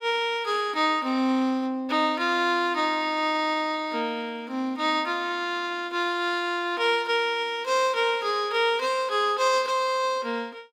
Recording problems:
none

